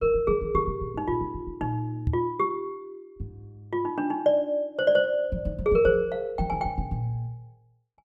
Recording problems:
microphone bump; at 2 s; peak +3 dB vs average level

